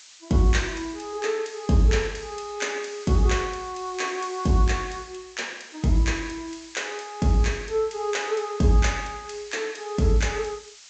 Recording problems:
low-pass filter; nothing above 8 kHz
background hiss; slope +5 dB per octave, SNR 21 dB

